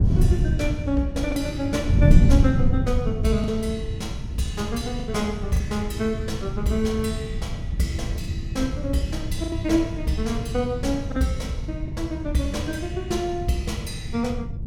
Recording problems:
wind noise; below 140 Hz, SNR 0 dB
lost packets; 3% of the sound replaced, filled with the last packet

